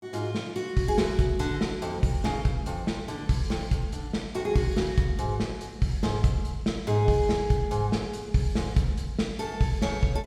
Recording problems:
none

